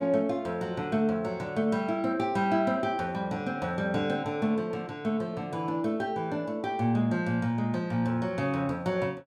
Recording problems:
none

